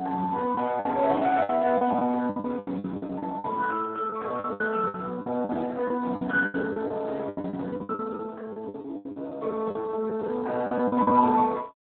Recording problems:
phone line; 240 Hz to 2.2 kHz, Speex
packet loss; 16% of the sound replaced, filled with the last packet

